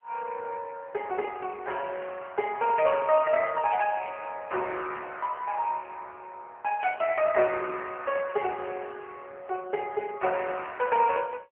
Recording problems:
phone line; 300 Hz to 3.1 kHz, AMR-NB

